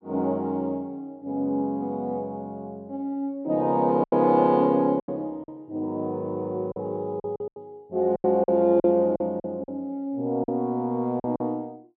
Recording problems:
packet loss; 7% of the sound replaced, filled with silence

